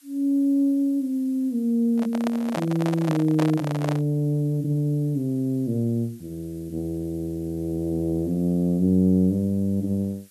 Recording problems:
background hiss; slope +4 dB per octave, SNR 29 dB
microphone handling noise; from 2 to 4 s; peak -1 dB vs average level

